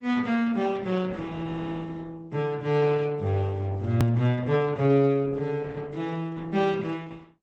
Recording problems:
lossy compression; Opus, log-spectral distance 3 dB, nothing above 19.5 kHz
edit click; at 4 s

